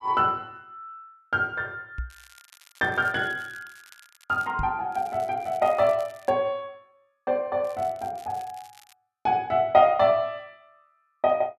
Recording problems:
microphone bump; at 2 s and at 4.5 s; peak -4 dB vs average level
crackling; from 2 to 4.5 s, from 5 to 6.5 s and from 7.5 to 9 s; loose cable, SNR 27 dB

